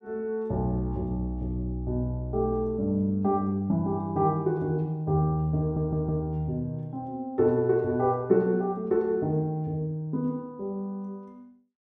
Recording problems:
stutter; at 5.5 s

